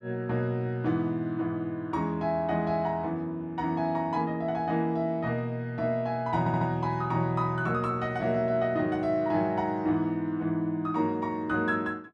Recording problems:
stutter; at 6.5 s

